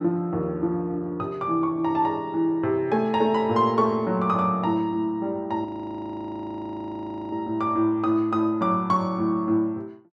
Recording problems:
frozen audio; at 5.5 s for 1.5 s

